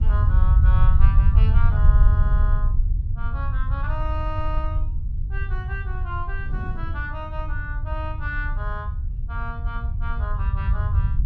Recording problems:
low-frequency rumble; below 80 Hz, SNR -11 dB
wind on the microphone; below 190 Hz, SNR 11 dB

